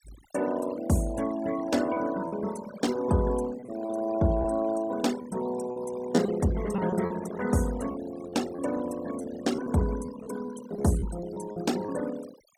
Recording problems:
denoising artefacts; signal-to-artefact ratio 15 dB
packet loss; 6% of the sound replaced, filled with repeated pitch periods

